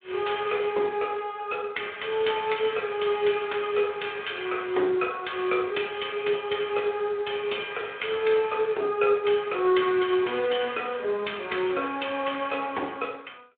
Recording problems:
telephone audio; 300 Hz to 3.6 kHz, Speex

